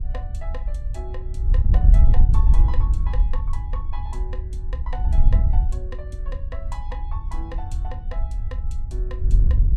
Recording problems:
wind on the microphone; below 62 Hz, SNR -16 dB

